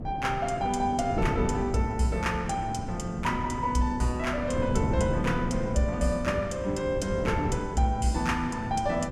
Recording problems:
wind on the microphone; below 260 Hz, SNR 5 dB

